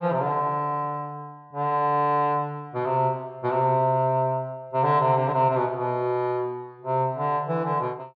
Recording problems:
none

